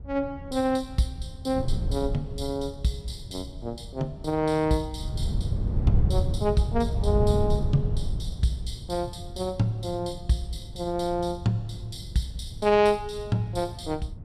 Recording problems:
wind on the microphone; below 120 Hz, SNR 4 dB

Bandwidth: 14.5 kHz